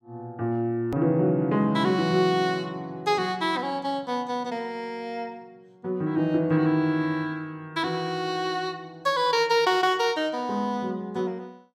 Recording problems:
click at an edit; at 1 s

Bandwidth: 16 kHz